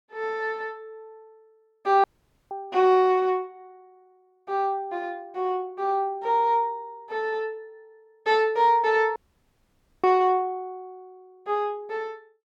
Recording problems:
dropout; at 2 s and at 9 s for 1 s

